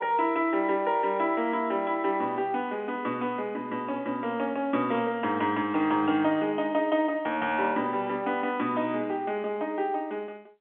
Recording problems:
phone line; 170 Hz to 3.4 kHz, G.711

